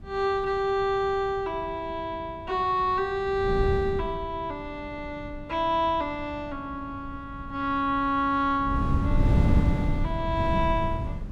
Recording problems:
wind on the microphone; below 160 Hz, SNR 0 dB

